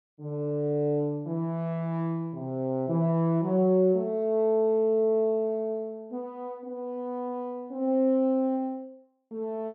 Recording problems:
none

